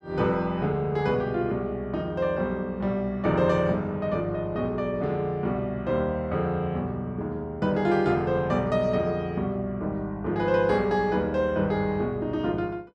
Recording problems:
none

